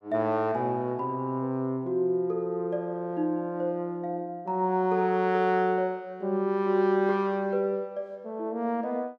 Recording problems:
none

